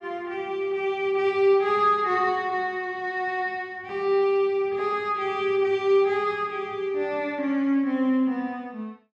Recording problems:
none

